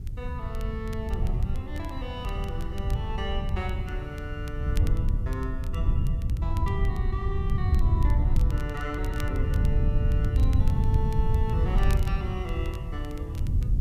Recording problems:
background hiss; slope -1 dB per octave, SNR 29 dB
wind on the microphone; below 100 Hz, SNR -9 dB
crackle; vinyl, SNR 15 dB

